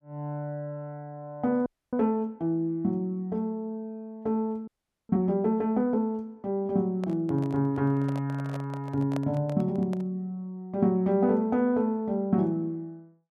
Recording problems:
frozen audio; at 1.5 s and at 4.5 s
handling noise; from 7 to 10 s; peak -4 dB vs average level

